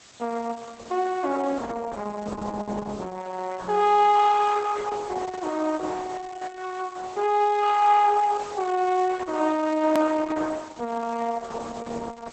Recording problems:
lossy codec; Opus, log-spectral distance 7 dB, nothing above 14.6 kHz
hiss; slope -1 dB per octave, SNR 22 dB
click at an edit; at 10 s

